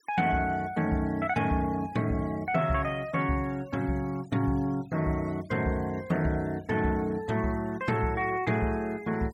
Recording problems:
denoising artefacts; signal-to-artefact ratio 25 dB

